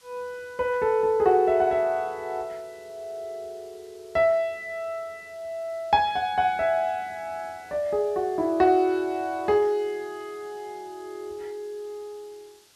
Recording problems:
background hiss; slope +1 dB per octave, SNR 28 dB

